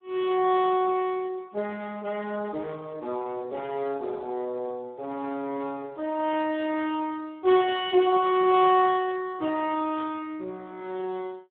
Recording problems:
telephone audio; 240 Hz to 3.7 kHz, Speex
burst of static; at 10 s; peak -16 dB vs average level

